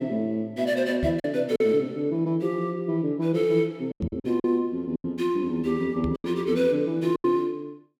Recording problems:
packet loss; 7% of the sound replaced, filled with silence
knock on the microphone; at 1 s, at 4 s and at 6 s; peak 0 dB vs average level

